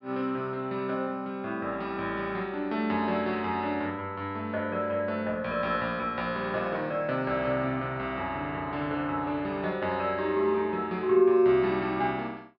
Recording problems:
treble cut off; nothing above 5.5 kHz

